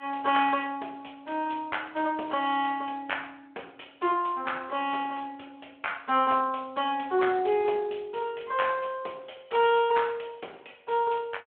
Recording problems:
telephone audio; 280 Hz to 3.3 kHz, Speex

